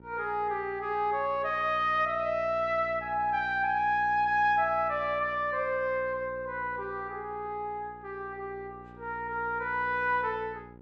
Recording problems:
hum; 60 Hz, harmonics up to 1.3 kHz, SNR 20 dB

